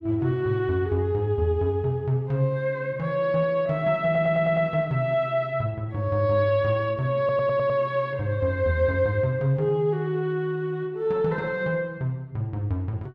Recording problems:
stutter; at 4 s and at 7 s

